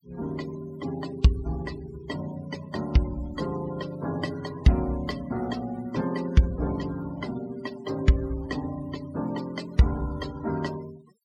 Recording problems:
noise reduction artefacts; signal-to-artefact ratio 17 dB

